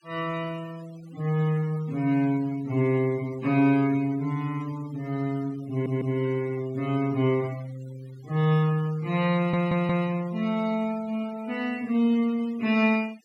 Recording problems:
noise reduction artefacts; signal-to-artefact ratio 23 dB
stutter; at 5.5 s and at 9.5 s

